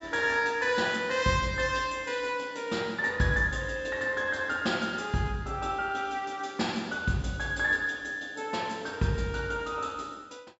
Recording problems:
treble cut off; nothing above 7.7 kHz

